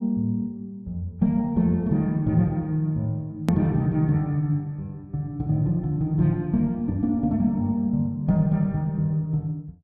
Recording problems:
edit click; at 3.5 s

